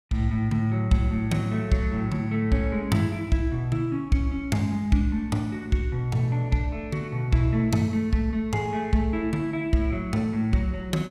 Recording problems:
none

